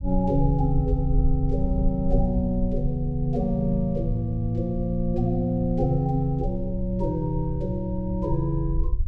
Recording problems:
rumble; below 60 Hz, SNR 6 dB

